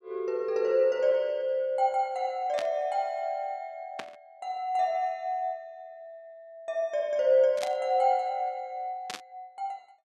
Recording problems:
burst of static; 4 times, first at 2.5 s; peak -4 dB vs average level

